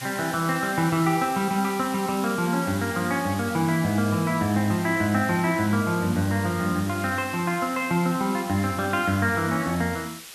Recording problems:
hiss; slope +2 dB per octave, SNR 14 dB

